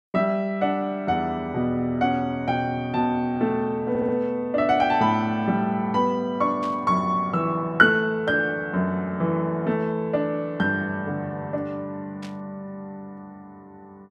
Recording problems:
audio stuttering; at 4 s
burst of static; at 6.5 s and at 12 s; peak -14 dB vs average level

